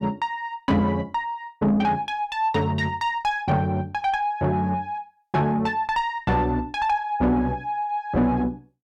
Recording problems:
distortion; soft clipping, signal-to-distortion ratio 10 dB

